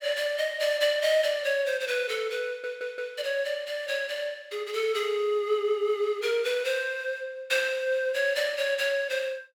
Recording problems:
stutter; at 2.5 s

